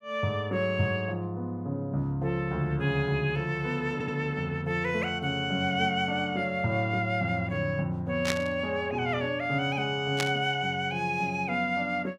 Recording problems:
stutter; at 4 s
burst of static; at 8.5 s and at 10 s; peak +3 dB vs average level

